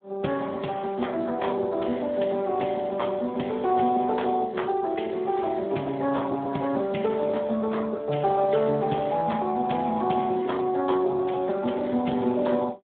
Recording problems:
telephone audio; 170 Hz to 3.6 kHz, Speex

